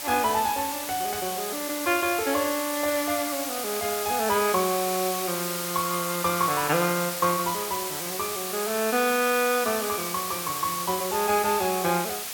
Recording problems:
hiss; slope +1 dB per octave, SNR 4 dB

